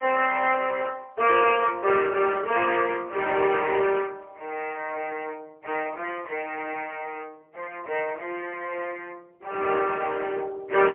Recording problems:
phone line; 340 Hz to 3.6 kHz, AMR-NB, then MP3

